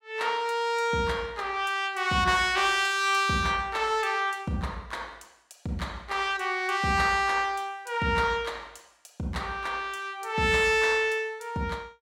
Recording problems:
none

